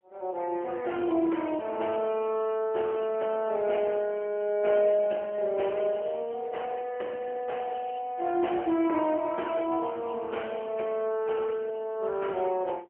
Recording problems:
telephone audio; 260 Hz to 3.1 kHz, AMR-NB, then MP3

